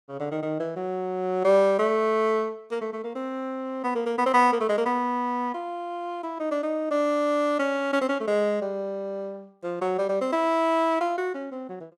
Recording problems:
none

